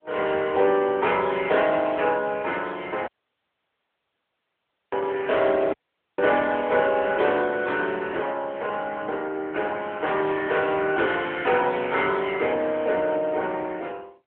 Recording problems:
phone line; 300 Hz to 3.4 kHz, AMR-NB
dropout; at 3 s for 2 s and at 5.5 s

